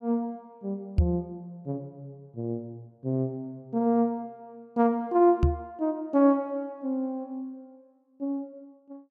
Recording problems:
microphone thump; at 1 s and at 5.5 s; peak +10 dB vs average level

